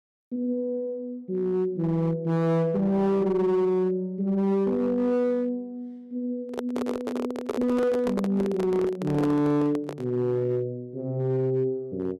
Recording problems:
distorted audio; hard clipping, uneven, signal-to-distortion ratio 11 dB
handling noise; from 6.5 to 10 s; peak +1 dB vs average level

